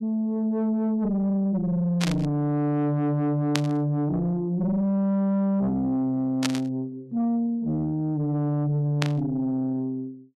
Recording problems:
distortion; soft clipping, signal-to-distortion ratio 7 dB
static burst; 4 times, first at 2 s; peak +3 dB vs average level

